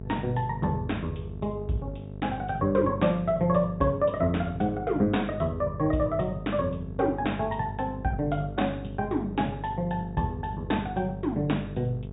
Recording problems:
treble missing; nothing above 4 kHz
electrical hum; 50 Hz, harmonics up to 700 Hz, SNR 11 dB

